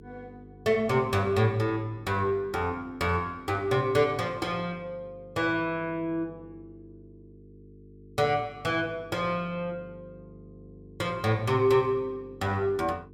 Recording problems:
electrical hum; 50 Hz, harmonics up to 450 Hz, SNR 22 dB

